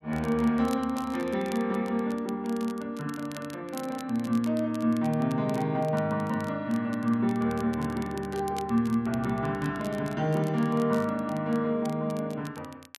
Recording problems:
crackle; vinyl, SNR 21 dB

